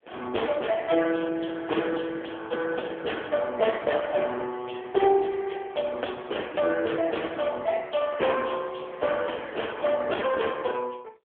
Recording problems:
phone line; 280 Hz to 3.4 kHz, AMR-NB

